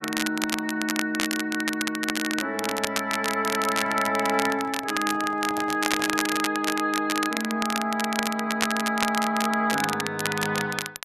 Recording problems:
crackling; vinyl, SNR 4 dB
handling noise; from 3.5 to 6.5 s; peak -9 dB vs average level

